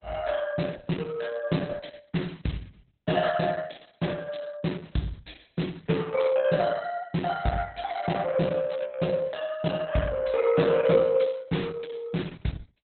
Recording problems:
lossy compression; Opus, log-spectral distance 6 dB, nothing above 4.1 kHz

